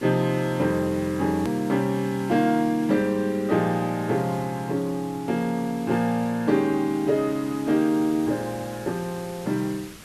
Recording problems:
hiss; slope -1 dB per octave, SNR 19 dB
click at an edit; at 1.5 s

